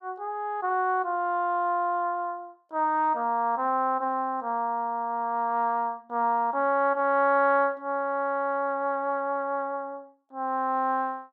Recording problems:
none

